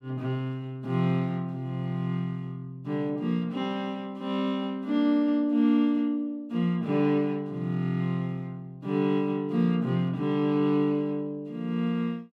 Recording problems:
none

